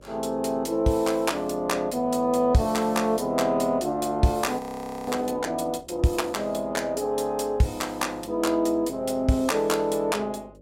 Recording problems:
hum; 50 Hz, harmonics up to 600 Hz, SNR 25 dB
frozen audio; at 4.5 s

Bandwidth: 16 kHz